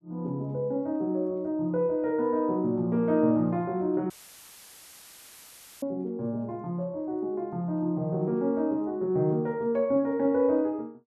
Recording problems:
audio cutting out; at 4 s for 1.5 s; filled with static

